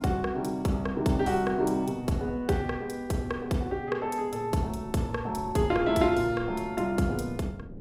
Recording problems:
wind noise; below 290 Hz, SNR 18 dB

